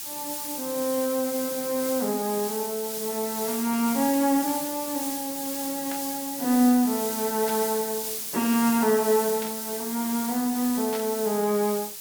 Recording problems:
hiss; slope +2 dB per octave, SNR 5 dB
burst of static; 4 times, first at 6 s; peak -7 dB vs average level

